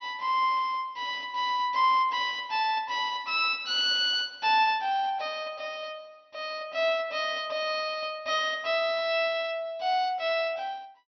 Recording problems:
treble missing; nothing above 5.9 kHz

